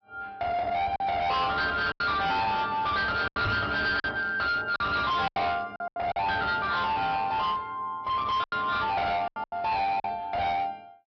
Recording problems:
treble cut off; nothing above 5.5 kHz
codec artefacts; AAC, log-spectral distance 2 dB
distortion; hard clipping, signal-to-distortion ratio 7 dB
packet loss; 7% of the sound replaced, filled with silence
microphone bump; at 3.5 s; peak 0 dB vs average level

